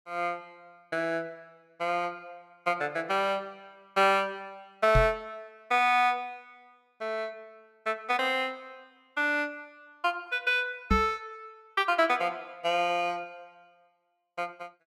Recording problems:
microphone thump; at 5 s and at 11 s; peak +5 dB vs average level

